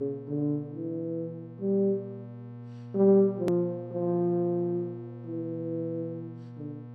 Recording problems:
hum; 60 Hz, harmonics up to 1.1 kHz, SNR 15 dB
hard cut with a click; at 3.5 s

